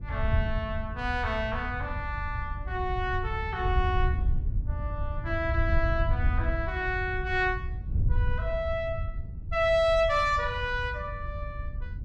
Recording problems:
wind on the microphone; below 86 Hz, SNR 3 dB

